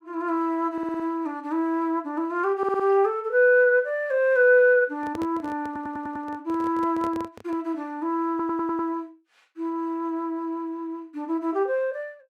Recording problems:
stutter; 4 times, first at 0.5 s
handling noise; from 5 to 7.5 s; peak -8 dB vs average level

